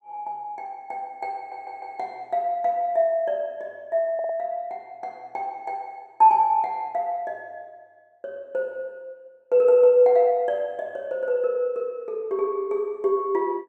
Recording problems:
audio stuttering; at 1.5 s and at 4 s

